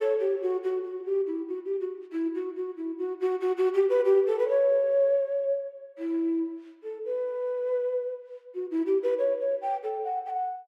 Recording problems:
none

